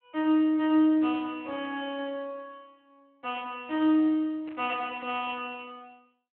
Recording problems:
phone line; 260 Hz to 3.1 kHz, Speex
burst of static; at 4.5 s; peak -18 dB vs average level

